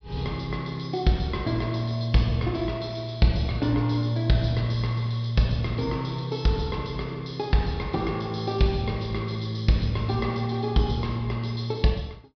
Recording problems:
low-pass filter; nothing above 5.5 kHz

